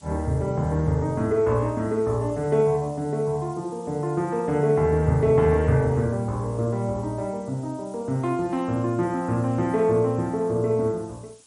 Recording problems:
lossy codec; MP3, log-spectral distance 4 dB, nothing above 13.1 kHz
hiss; SNR 27 dB

